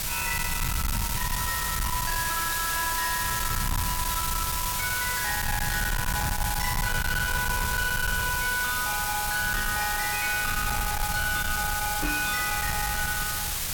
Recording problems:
distorted audio; hard clipping, uneven, signal-to-distortion ratio 6 dB
background hiss; slope +1 dB per octave, SNR 1 dB
low-frequency rumble; below 830 Hz, SNR 5 dB
knock on the microphone; at 12 s; peak +1 dB vs average level

